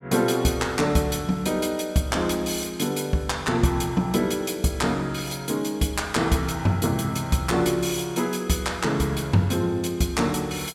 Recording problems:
none

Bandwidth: 17 kHz